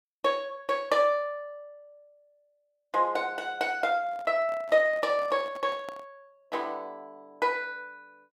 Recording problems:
handling noise; from 4 to 6 s; peak -10 dB vs average level

